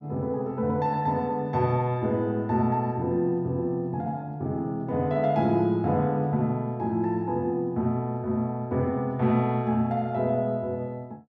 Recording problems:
none

